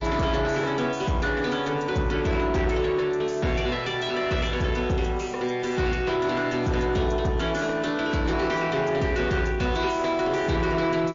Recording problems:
lossy compression; MP3, log-spectral distance 3 dB, nothing above 6.7 kHz
distorted audio; soft clipping, signal-to-distortion ratio 10 dB

